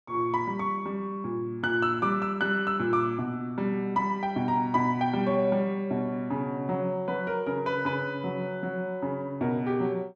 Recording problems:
none

